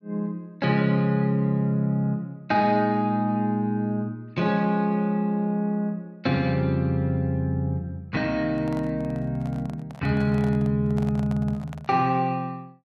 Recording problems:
microphone handling noise; from 8.5 to 12 s; peak -11 dB vs average level

